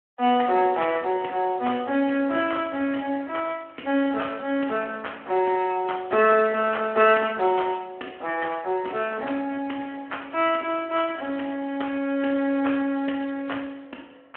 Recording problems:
phone line; 220 Hz to 3.3 kHz, Speex

